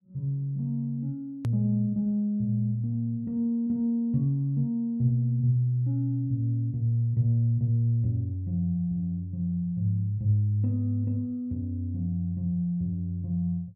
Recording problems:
edit click; at 1.5 s

